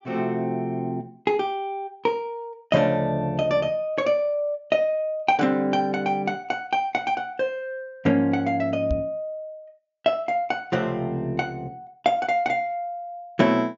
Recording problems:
treble missing; nothing above 7.2 kHz
microphone thump; at 9 s; peak +1 dB vs average level

